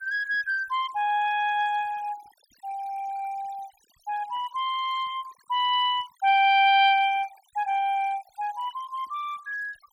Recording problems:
denoising artefacts; signal-to-artefact ratio 24 dB

